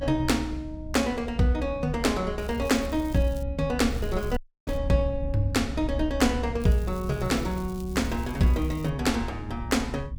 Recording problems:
hum; 50 Hz, harmonics up to 300 Hz, SNR 20 dB
rumble; below 70 Hz, strongest tone 66 Hz, SNR 9 dB
crackling; from 2.5 to 3.5 s, at 4 s and from 6.5 to 9 s; loose cable, SNR 23 dB
audio cutting out; at 4.5 s

